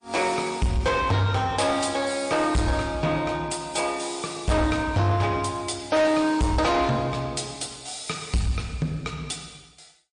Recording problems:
lossy codec; MP3, log-spectral distance 4 dB, nothing above 9.2 kHz
distortion; soft clipping, signal-to-distortion ratio 8 dB

